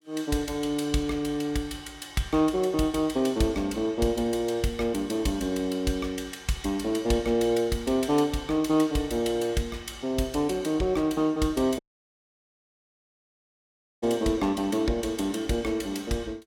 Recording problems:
dropout; at 12 s for 2 s

